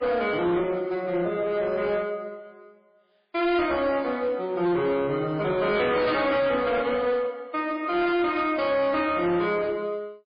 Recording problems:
lossy codec; MP3, log-spectral distance 2 dB, nothing above 4.4 kHz
distortion; hard clipping, uneven, signal-to-distortion ratio 10 dB

